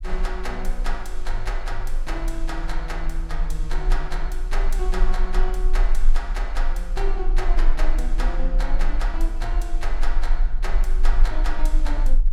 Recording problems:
rumble; below 32 Hz, strongest tone 18 Hz, SNR -6 dB

